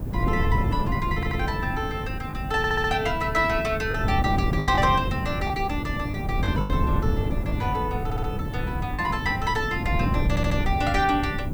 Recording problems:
electrical hum; 50 Hz, harmonics up to 300 Hz, SNR 14 dB
hiss; slope -1 dB per octave, SNR 25 dB
wind on the microphone; below 190 Hz, SNR 2 dB
lost packets; 3% of the sound replaced, filled with the last packet
audio stuttering; 4 times, first at 1 s

